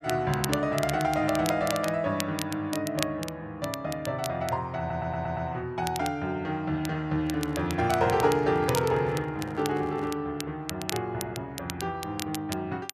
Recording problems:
crackling; vinyl, SNR 10 dB
audio stuttering; at 5 s
handling noise; from 7 to 10 s; peak -9 dB vs average level

